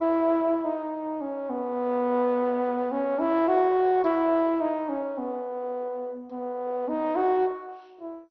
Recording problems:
lossy compression; MP2, log-spectral distance 3 dB, nothing above 5.7 kHz

